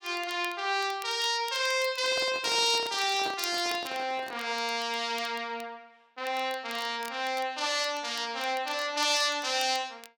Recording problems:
crackle; vinyl, SNR 19 dB
handling noise; from 2 to 4.5 s; peak -7 dB vs average level

